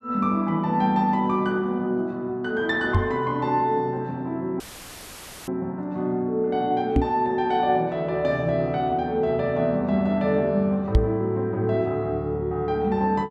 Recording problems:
microphone thump; at 3 s, at 7 s and at 11 s; peak +8 dB vs average level
audio cutting out; at 4.5 s for 1 s; filled with static

